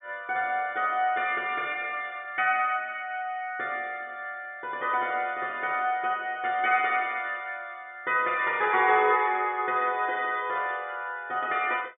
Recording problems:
treble cut off; nothing above 3.5 kHz

